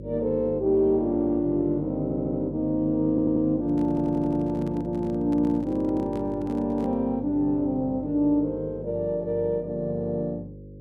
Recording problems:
hum; 50 Hz, harmonics up to 550 Hz, SNR 14 dB
stutter; at 2 s, at 3 s and at 4 s
handling noise; from 3.5 to 7 s; peak -9 dB vs average level

